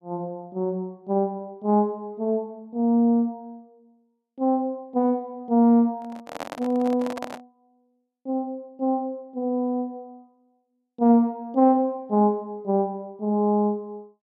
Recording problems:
handling noise; from 6 to 7.5 s; peak -5 dB vs average level

